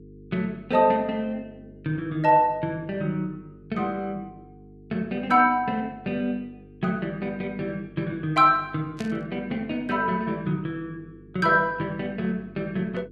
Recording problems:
electrical hum; 50 Hz, harmonics up to 450 Hz, SNR 22 dB
burst of static; at 9 s; peak -10 dB vs average level

